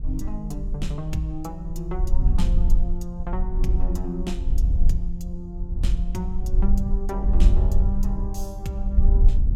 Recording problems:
wind on the microphone; below 52 Hz, SNR -7 dB

